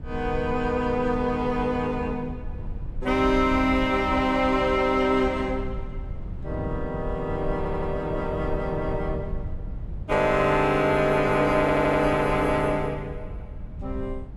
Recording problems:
rumble; below 98 Hz, SNR 12 dB
audio stuttering; at 7.5 s and at 12 s

